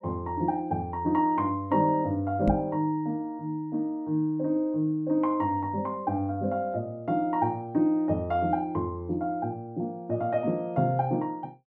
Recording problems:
knock on the microphone; at 2.5 s; peak +6 dB vs average level

